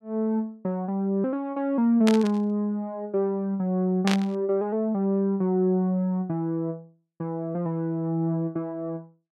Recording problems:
burst of static; at 2 s and at 4 s; peak +2 dB vs average level

